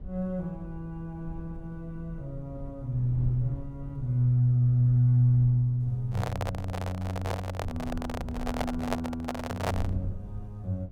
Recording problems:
rumble; below 92 Hz, SNR 14 dB
handling noise; from 6 to 10 s; peak +3 dB vs average level

